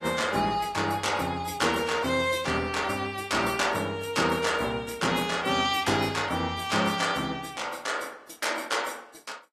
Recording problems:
lossy compression; AAC, log-spectral distance 4 dB

